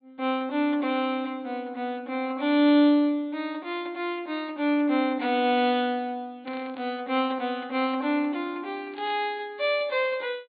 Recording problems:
treble cut off; nothing above 4.5 kHz
burst of static; at 6.5 s and at 9 s; peak -14 dB vs average level

